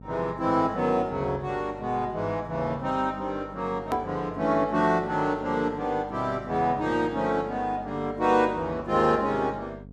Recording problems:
electrical hum; 50 Hz, harmonics up to 700 Hz, SNR 19 dB
click at an edit; at 4 s

